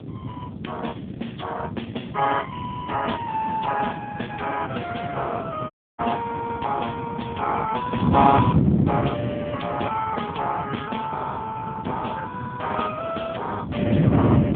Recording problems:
phone line; 170 Hz to 3.4 kHz, AMR-NB
wind noise; below 280 Hz, SNR 1 dB
audio cutting out; at 5.5 s

